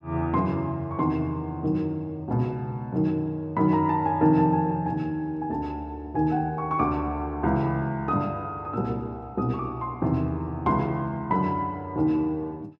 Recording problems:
none

